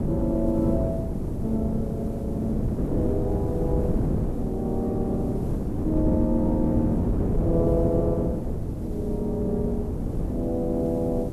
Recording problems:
background hiss; slope 0 dB per octave, SNR 29 dB
wind noise; below 290 Hz, SNR 0 dB

